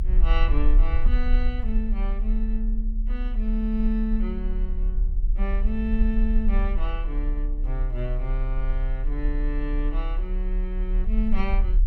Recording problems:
low-frequency rumble; below 38 Hz, strongest tone 34 Hz, SNR -5 dB

